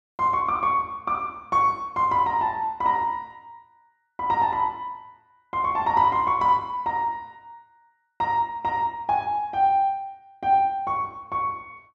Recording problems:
none

